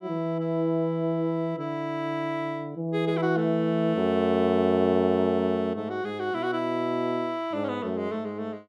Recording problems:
none

